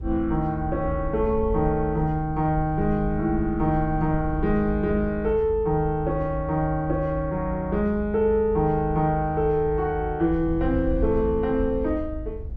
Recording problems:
rumble; below 76 Hz, SNR 10 dB

